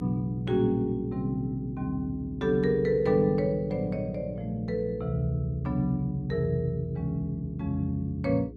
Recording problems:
mains hum; 60 Hz, harmonics up to 420 Hz, SNR 15 dB

